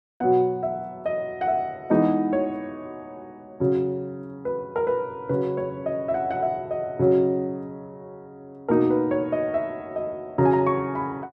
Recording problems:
none

